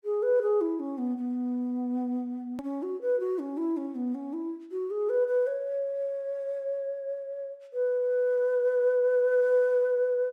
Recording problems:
click at an edit; at 2.5 s

